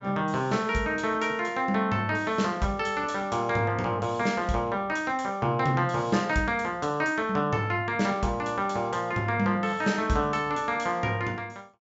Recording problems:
low-pass filter; nothing above 8 kHz

